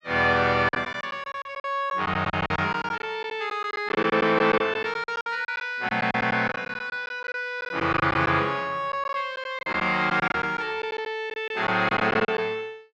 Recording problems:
lost packets; 12% of the sound replaced, filled with silence

